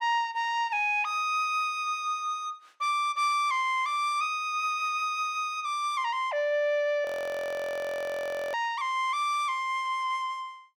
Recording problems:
frozen audio; at 7 s for 1.5 s

